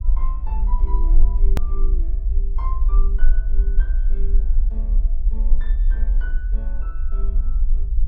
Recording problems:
low-frequency rumble; below 40 Hz, strongest tone 20 Hz, SNR -18 dB
edit click; at 1.5 s

